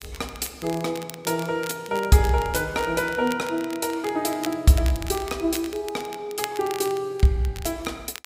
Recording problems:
crackle; vinyl, SNR 15 dB

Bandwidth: 15.5 kHz